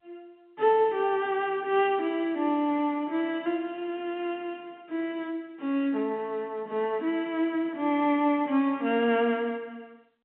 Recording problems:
telephone audio; 170 Hz to 3.8 kHz, G.711

